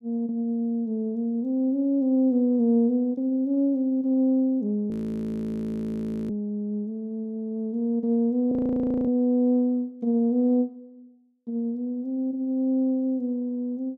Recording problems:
audio freezing; at 5 s for 1.5 s and at 8.5 s for 0.5 s

